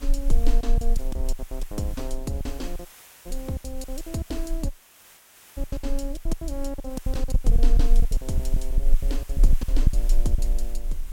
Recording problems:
mains hum; 60 Hz, harmonics up to 420 Hz, SNR 21 dB
hiss; SNR 13 dB
low-frequency rumble; below 34 Hz, strongest tone 20 Hz, SNR -6 dB
lost packets; 19% of the sound replaced, filled with silence
dropout; at 3 s and at 4.5 s for 1 s

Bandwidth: 16.5 kHz